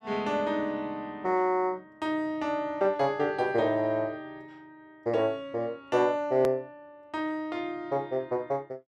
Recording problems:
click at an edit; at 6.5 s

